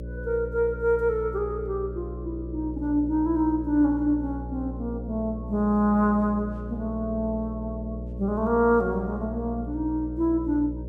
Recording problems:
electrical hum; 60 Hz, harmonics up to 600 Hz, SNR 10 dB

